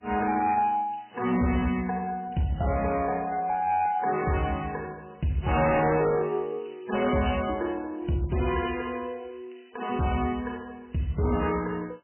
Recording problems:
lossy compression; MP3, log-spectral distance 5 dB, nothing above 2.6 kHz
distorted audio; hard clipping, uneven, signal-to-distortion ratio 11 dB

